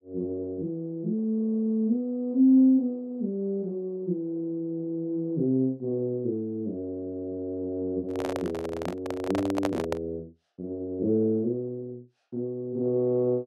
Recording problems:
microphone handling noise; from 8 to 10 s; peak +2 dB vs average level

